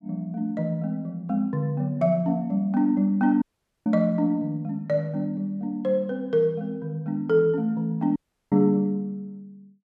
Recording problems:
audio cutting out; at 3.5 s and at 8 s

